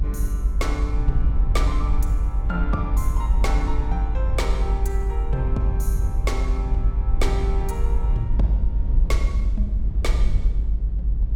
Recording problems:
low-frequency rumble; below 54 Hz, SNR -7 dB

